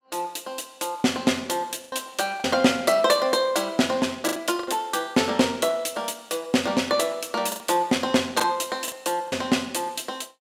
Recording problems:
lost packets; 5% of the sound replaced, filled with the last packet

